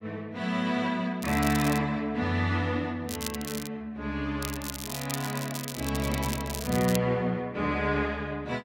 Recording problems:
crackle; at 1 s, at 3 s and from 4.5 to 7 s; loose cable, SNR 8 dB

